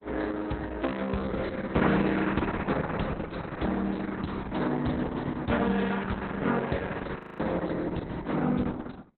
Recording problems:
lossy compression; Opus, log-spectral distance 5 dB, nothing above 4 kHz
frozen audio; at 7 s

